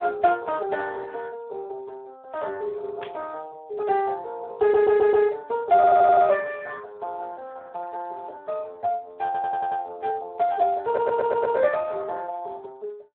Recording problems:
phone line; 320 Hz to 3.6 kHz, Speex
static burst; at 3 s; peak -11 dB vs average level
audio stuttering; 4 times, first at 4.5 s

